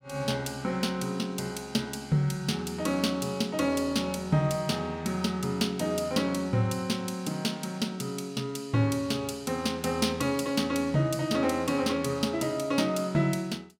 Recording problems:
none

